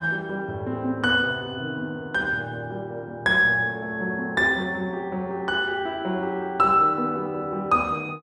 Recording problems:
none

